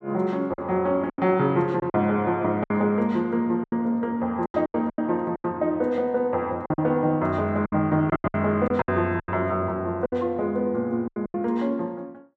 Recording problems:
packet loss; 11% of the sound replaced, filled with silence

